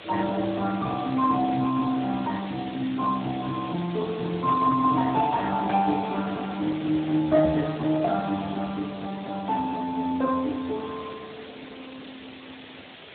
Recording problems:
treble cut off; nothing above 4 kHz
lossy codec; Speex, log-spectral distance 16 dB
background hiss; SNR 16 dB
knock on the microphone; at 7.5 s; peak -3 dB vs average level

